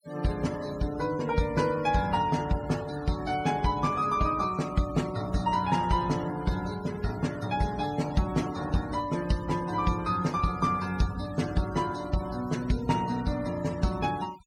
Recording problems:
noise reduction artefacts; signal-to-artefact ratio 17 dB

